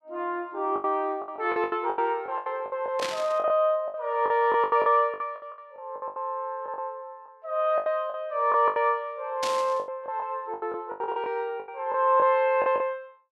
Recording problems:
lost packets; 16% of the sound replaced, filled with the last packet
static burst; at 3 s and at 9.5 s; peak -1 dB vs average level

